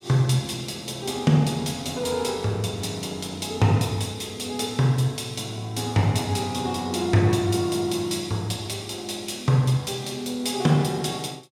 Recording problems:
none

